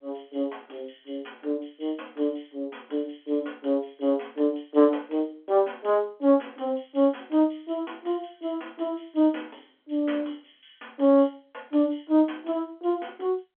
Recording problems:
phone line; 240 Hz to 3.4 kHz, G.711

